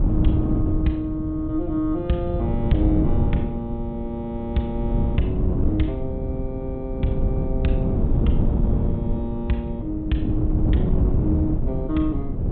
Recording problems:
low-pass filter; nothing above 4 kHz
wind on the microphone; below 170 Hz, SNR -2 dB

